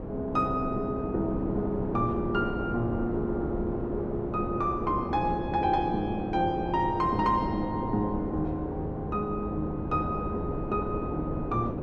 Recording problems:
wind on the microphone; below 450 Hz, SNR 4 dB

